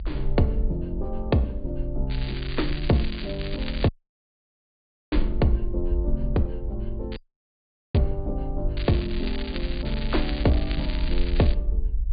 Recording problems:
treble missing; nothing above 4.8 kHz
low-frequency rumble; below 56 Hz, SNR 3 dB
crackling; from 2 to 4 s, at 7 s and from 9 to 12 s; loose cable, SNR 10 dB
dropout; at 4 s for 1 s and at 7 s for 1 s

